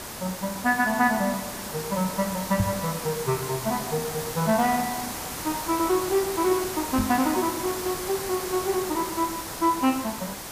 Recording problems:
hiss; slope -3 dB per octave, SNR 6 dB
knock on the microphone; at 2.5 s and at 7 s; peak +4 dB vs average level

